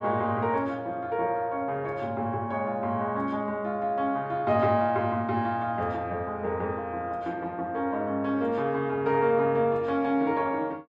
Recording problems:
none

